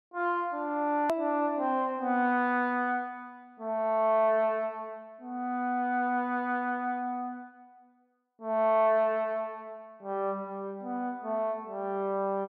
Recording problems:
edit click; at 1 s

